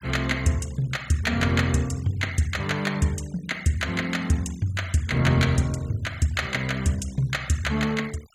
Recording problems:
noise reduction artefacts; signal-to-artefact ratio 21 dB

